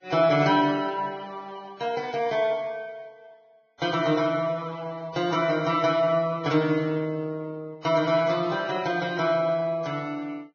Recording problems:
lossy codec; Vorbis, log-spectral distance 3 dB, nothing above 6 kHz

